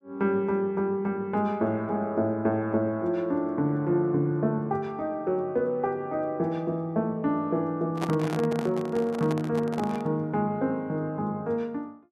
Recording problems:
microphone handling noise; from 8 to 10 s; peak -1 dB vs average level

